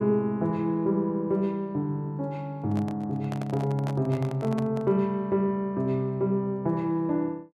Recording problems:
microphone handling noise; from 2.5 to 5 s; peak -6 dB vs average level

